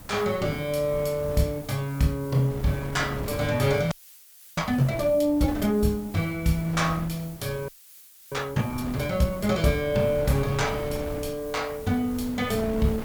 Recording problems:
hiss; SNR 21 dB
wind on the microphone; below 470 Hz, SNR 13 dB
frozen audio; at 4 s for 0.5 s and at 7.5 s for 0.5 s

